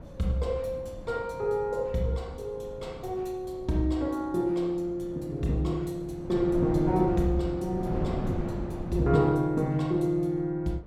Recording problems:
wind on the microphone; below 310 Hz, SNR 10 dB

